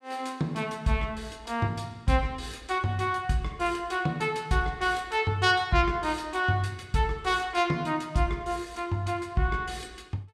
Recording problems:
none

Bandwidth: 14.5 kHz